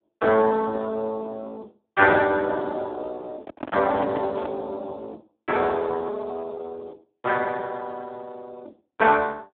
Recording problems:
phone line; 240 Hz to 3.8 kHz, Speex
microphone handling noise; from 3.5 to 4.5 s; peak -3 dB vs average level

